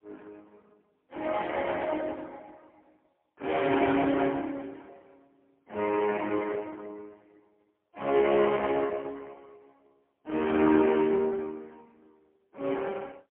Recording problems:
phone line; 220 Hz to 3.3 kHz, AMR-NB, then MP3

